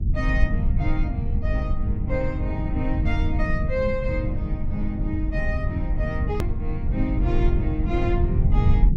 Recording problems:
rumble; below 94 Hz, SNR -4 dB
hard cut with a click; at 6.5 s

